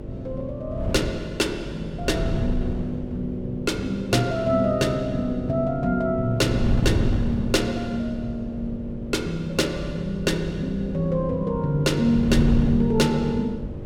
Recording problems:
hum; 50 Hz, harmonics up to 600 Hz, SNR 13 dB
wind on the microphone; below 170 Hz, SNR 7 dB

